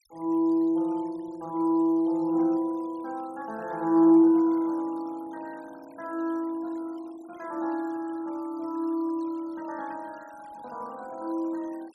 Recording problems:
noise reduction artefacts; signal-to-artefact ratio 28 dB

